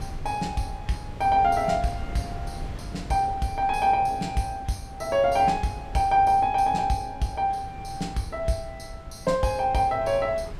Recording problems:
wind noise; below 170 Hz, SNR 15 dB

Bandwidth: 15.5 kHz